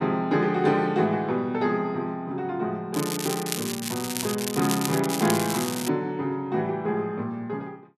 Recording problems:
crackling; from 3 to 6 s; loose cable, SNR 5 dB

